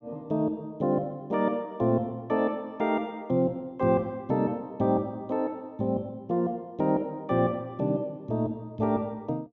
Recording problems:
none

